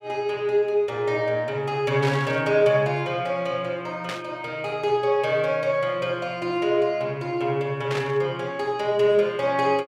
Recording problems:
static burst; at 2 s, at 4 s and at 8 s; peak -4 dB vs average level

